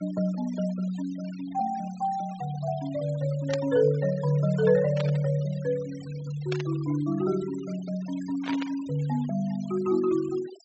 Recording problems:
low-pass filter; nothing above 7.9 kHz
noise reduction artefacts; signal-to-artefact ratio 19 dB
burst of static; 4 times, first at 3.5 s; peak -4 dB vs average level

